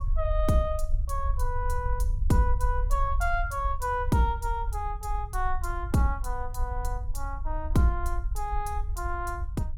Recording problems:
rumble; below 58 Hz, SNR 2 dB

